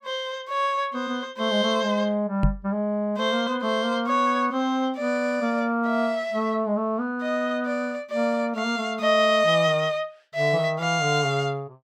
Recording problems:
microphone bump; at 2.5 s; peak +5 dB vs average level

